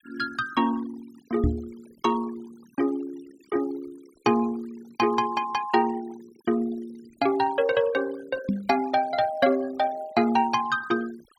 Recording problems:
noise reduction artefacts; signal-to-artefact ratio 22 dB
microphone bump; at 1.5 s and at 8.5 s; peak +5 dB vs average level

